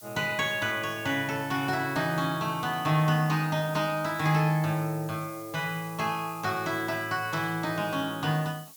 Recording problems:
background hiss; slope +3 dB per octave, SNR 18 dB

